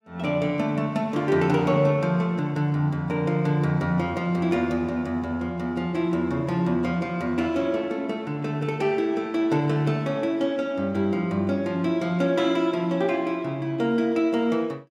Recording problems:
none

